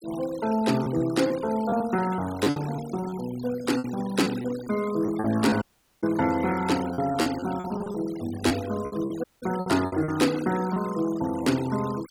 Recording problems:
denoising artefacts; signal-to-artefact ratio 15 dB
packet loss; 9% of the sound replaced, filled with repeated pitch periods
audio cutting out; at 5.5 s and at 9 s

